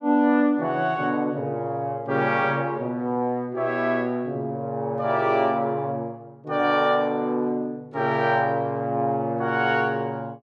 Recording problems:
none

